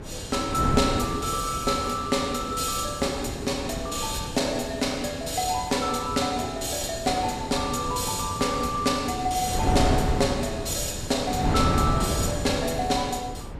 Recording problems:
wind noise; below 390 Hz, SNR 5 dB

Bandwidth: 14.5 kHz